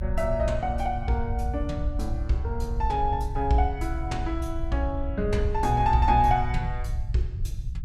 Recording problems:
rumble; below 76 Hz, SNR 4 dB

